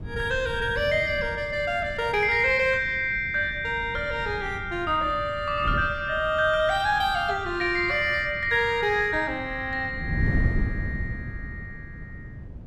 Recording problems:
wind noise; below 160 Hz, SNR 11 dB

